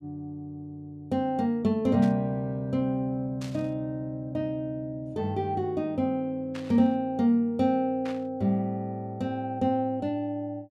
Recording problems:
static burst; 4 times, first at 2 s; peak -10 dB vs average level

